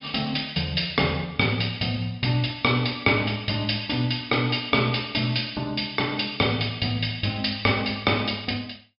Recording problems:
treble missing; nothing above 5.5 kHz

